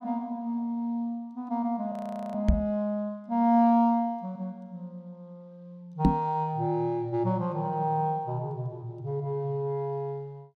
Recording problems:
audio freezing; at 2 s
knock on the microphone; at 2.5 s and at 6 s; peak +10 dB vs average level

